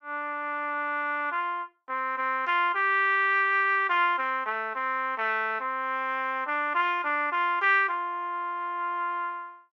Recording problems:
none

